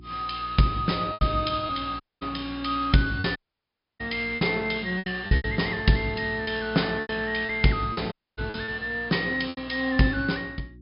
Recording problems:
low-pass filter; nothing above 5.5 kHz
mains hum; 60 Hz, harmonics up to 360 Hz, SNR 20 dB
lost packets; 8% of the sound replaced, filled with repeated pitch periods
audio cutting out; at 2 s, at 3.5 s for 0.5 s and at 8 s

